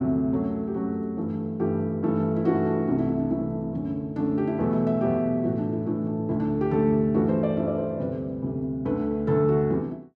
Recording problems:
none

